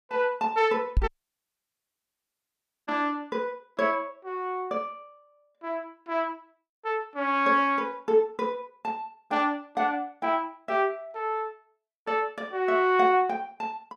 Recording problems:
knock on the microphone; at 1 s; peak +7 dB vs average level
dropout; at 1 s for 2 s

